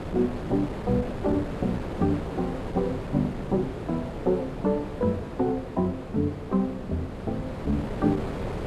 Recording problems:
wind on the microphone; below 570 Hz, SNR 7 dB

